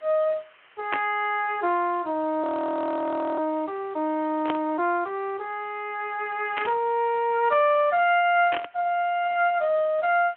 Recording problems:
telephone audio; 240 Hz to 3.3 kHz, Speex
background hiss; SNR 30 dB
static burst; 4 times, first at 1 s; peak 0 dB vs average level
frozen audio; at 2.5 s for 1 s

